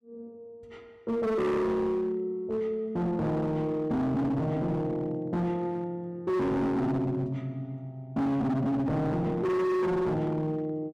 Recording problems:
distorted audio; hard clipping, signal-to-distortion ratio 7 dB

